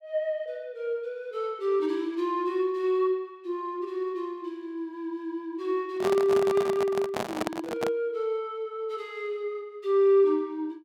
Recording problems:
handling noise; from 6 to 8 s; peak +2 dB vs average level

